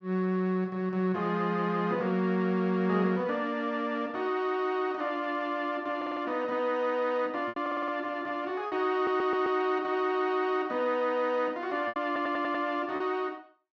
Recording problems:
packet loss; 2% of the sound replaced, filled with repeated pitch periods
audio stuttering; 4 times, first at 6 s

